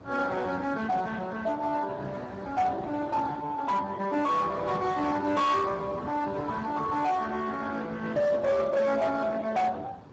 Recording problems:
lossy codec; Speex, log-spectral distance 4 dB, nothing above 7.6 kHz
distorted audio; hard clipping, signal-to-distortion ratio 12 dB
wind on the microphone; below 760 Hz, SNR 15 dB

